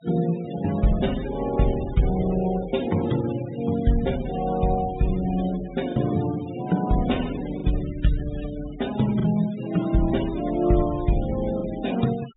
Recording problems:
low-pass filter; nothing above 4 kHz
noise reduction artefacts; signal-to-artefact ratio 16 dB
lost packets; 1.3% of the sound replaced, filled with the last packet

